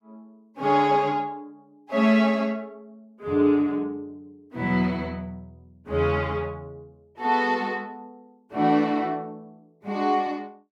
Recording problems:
none

